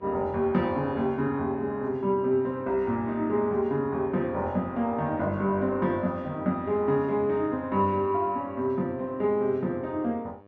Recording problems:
hum; 50 Hz, harmonics up to 2.4 kHz, SNR 27 dB

